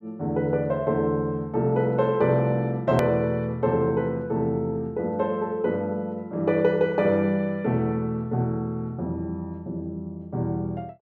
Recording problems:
hard cut with a click; at 3 s

